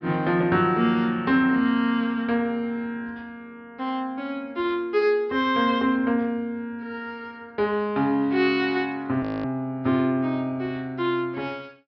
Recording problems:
treble missing; nothing above 5.5 kHz
audio freezing; at 9 s

